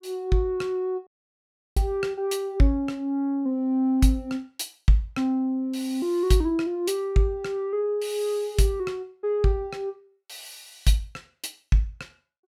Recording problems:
dropout; at 1 s for 0.5 s

